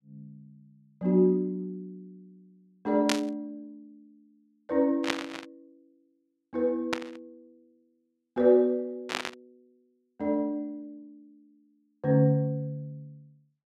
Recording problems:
static burst; 4 times, first at 3 s; peak +4 dB vs average level

